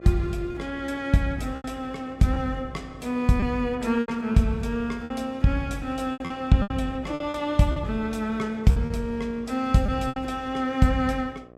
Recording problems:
hum; 60 Hz, harmonics up to 1.9 kHz, SNR 22 dB
packet loss; 7% of the sound replaced, filled with repeated pitch periods

